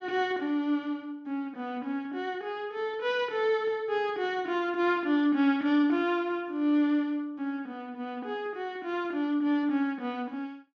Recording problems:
none

